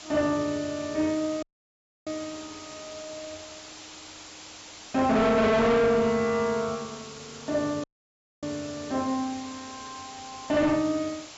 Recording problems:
treble cut off; nothing above 8 kHz
distortion; hard clipping, signal-to-distortion ratio 7 dB
hiss; slope 0 dB per octave, SNR 16 dB
dropout; at 1.5 s for 0.5 s and at 8 s for 0.5 s

